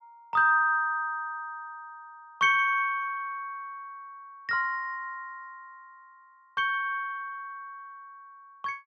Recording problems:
none

